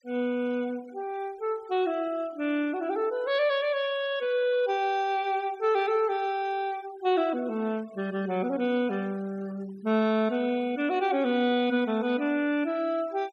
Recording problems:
noise reduction artefacts; signal-to-artefact ratio 24 dB

